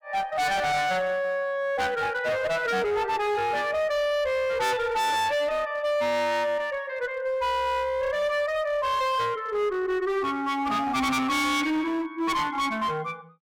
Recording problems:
distorted audio; hard clipping, uneven, signal-to-distortion ratio 6 dB

